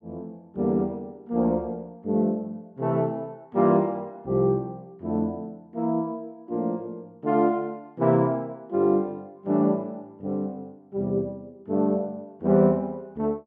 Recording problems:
none

